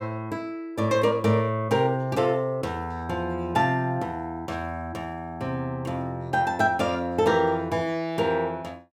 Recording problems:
none

